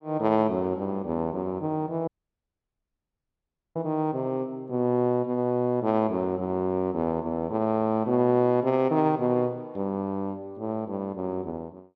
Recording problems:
audio cutting out; at 2 s for 1.5 s

